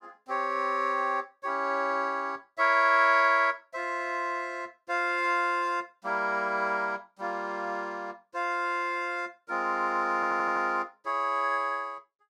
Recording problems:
stutter; at 10 s

